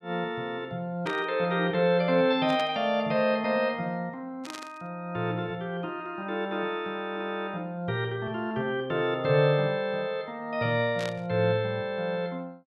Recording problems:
static burst; 4 times, first at 1 s; peak -6 dB vs average level

